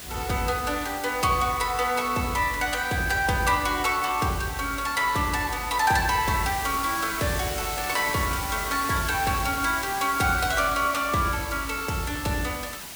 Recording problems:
hiss; slope -1 dB per octave, SNR 9 dB

